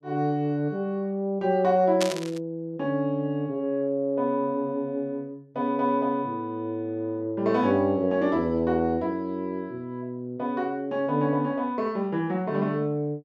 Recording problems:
burst of static; at 2 s; peak +2 dB vs average level

